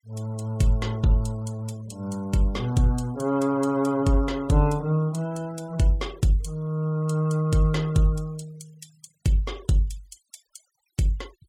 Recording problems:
noise reduction artefacts; signal-to-artefact ratio 25 dB

